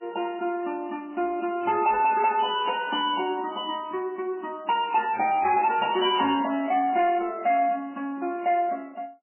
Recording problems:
lossy compression; MP3, log-spectral distance 3 dB, nothing above 2.7 kHz
distortion; soft clipping, signal-to-distortion ratio 10 dB

